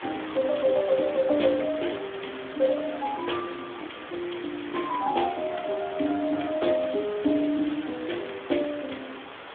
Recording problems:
telephone audio; 240 Hz to 3.5 kHz, Speex
background hiss; SNR 13 dB

